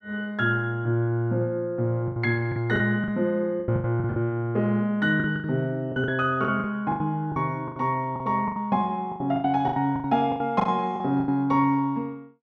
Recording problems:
packet loss; 13% of the sound replaced, filled with the last packet

